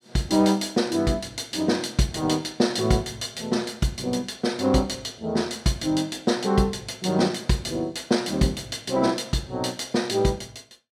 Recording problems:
none

